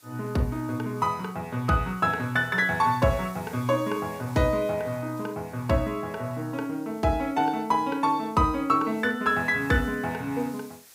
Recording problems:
background hiss; slope +1 dB per octave, SNR 24 dB

